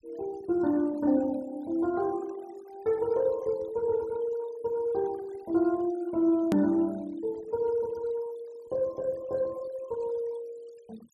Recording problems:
denoising artefacts; signal-to-artefact ratio 24 dB
click at an edit; at 6.5 s

